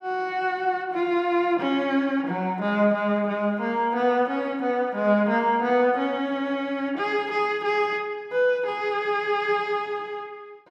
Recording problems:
none

